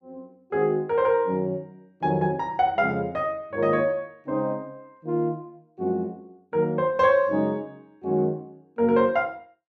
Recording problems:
none

